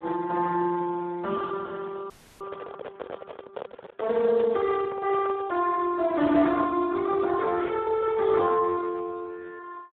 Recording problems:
telephone audio; 240 Hz to 3 kHz, Speex
handling noise; from 2 to 5.5 s; peak -5 dB vs average level
audio freezing; at 2 s

